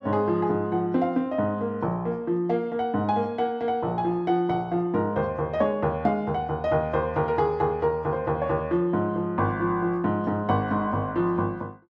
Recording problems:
none

